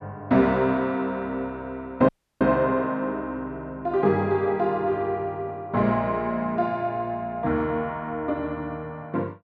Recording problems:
audio cutting out; at 2 s

